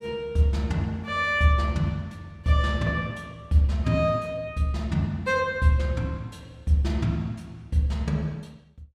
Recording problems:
none

